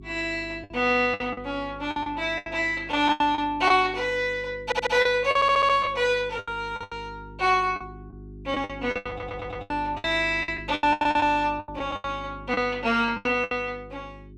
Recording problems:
electrical hum; 50 Hz, harmonics up to 400 Hz, SNR 19 dB
packet loss; 14% of the sound replaced, filled with the last packet
audio stuttering; at 4.5 s, at 5.5 s and at 9 s

